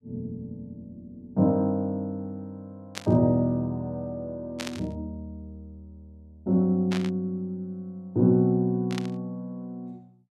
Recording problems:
burst of static; 4 times, first at 3 s; peak -2 dB vs average level

